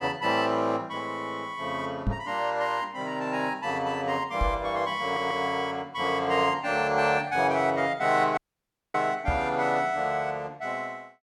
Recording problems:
knock on the microphone; at 2 s, at 4.5 s and at 9.5 s; peak +3 dB vs average level
stutter; at 5 s
audio cutting out; at 8.5 s for 0.5 s

